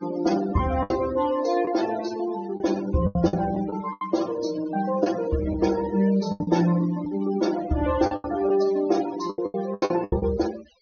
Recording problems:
treble missing; nothing above 6.3 kHz
denoising artefacts; signal-to-artefact ratio 16 dB
packet loss; 10% of the sound replaced, filled with the last packet

